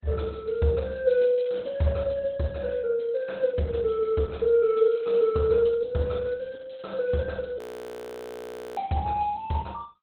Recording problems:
lossy codec; Opus, log-spectral distance 4 dB
audio freezing; at 7.5 s for 1 s

